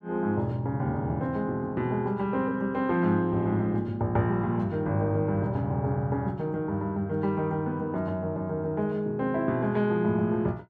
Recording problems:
none

